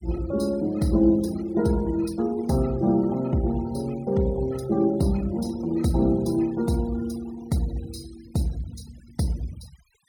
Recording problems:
noise reduction artefacts; signal-to-artefact ratio 23 dB

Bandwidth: 17.5 kHz